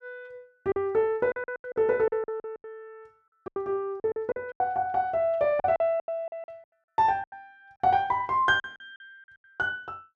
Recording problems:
packet loss; 14% of the sound replaced, filled with silence

